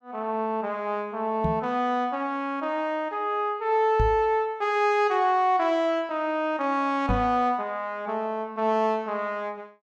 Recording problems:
knock on the microphone; at 1.5 s, at 4 s and at 7 s; peak +2 dB vs average level

